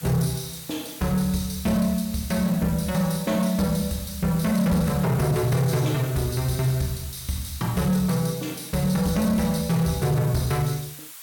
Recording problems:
distorted audio; hard clipping, signal-to-distortion ratio 12 dB
hiss; SNR 15 dB

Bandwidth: 17 kHz